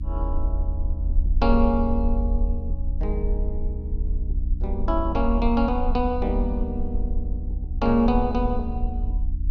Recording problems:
electrical hum; 60 Hz, harmonics up to 300 Hz, SNR 12 dB
rumble; below 72 Hz, SNR 2 dB

